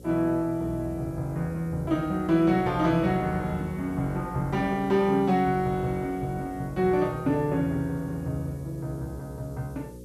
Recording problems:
hum; 60 Hz, harmonics up to 540 Hz, SNR 17 dB
background hiss; SNR 30 dB

